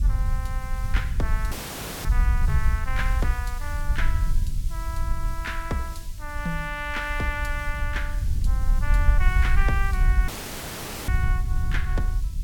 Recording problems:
hiss; slope +6 dB per octave, SNR 14 dB
wind on the microphone; below 62 Hz, SNR -5 dB
dropout; at 1.5 s for 0.5 s and at 10 s for 1 s

